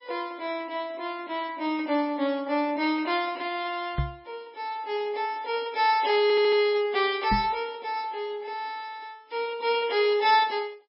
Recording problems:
codec artefacts; MP3, log-spectral distance 2 dB, nothing above 5.3 kHz
microphone thump; at 4 s and at 7.5 s; peak +2 dB vs average level
stutter; at 6 s

